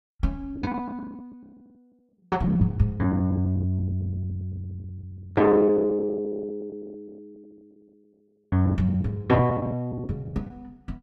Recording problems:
packet loss; 15% of the sound replaced, filled with the last packet

